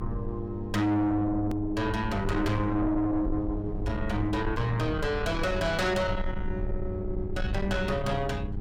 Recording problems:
distortion; soft clipping, signal-to-distortion ratio 11 dB
hum; 50 Hz, harmonics up to 800 Hz, SNR 10 dB
low-frequency rumble; below 90 Hz, SNR 7 dB
edit click; at 1.5 s

